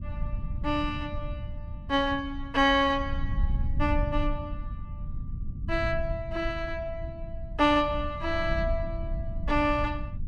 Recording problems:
low-frequency rumble; below 84 Hz, SNR 7 dB

